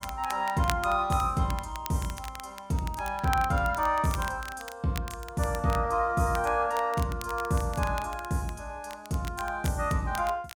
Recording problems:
crackling; vinyl, SNR 15 dB

